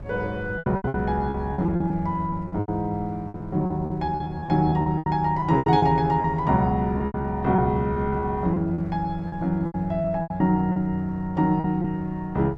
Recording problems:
wind on the microphone; below 190 Hz, SNR 17 dB
lost packets; 14% of the sound replaced, filled with repeated pitch periods

